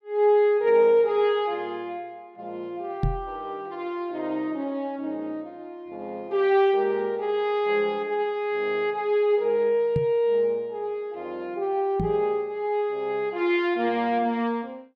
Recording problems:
microphone thump; at 3 s, at 10 s and at 12 s; peak +3 dB vs average level

